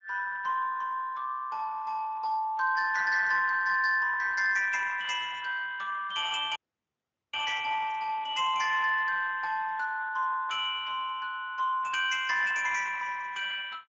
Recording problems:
codec artefacts; Speex, log-spectral distance 4 dB
dropout; at 6.5 s for 1 s

